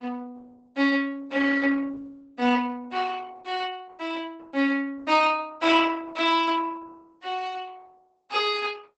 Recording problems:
lossy codec; Opus, log-spectral distance 3 dB, nothing above 8 kHz

